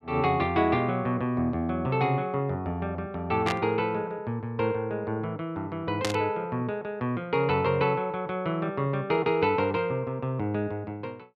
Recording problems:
static burst; at 3.5 s and at 6 s; peak +2 dB vs average level

